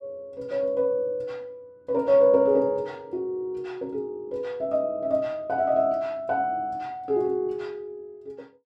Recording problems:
none

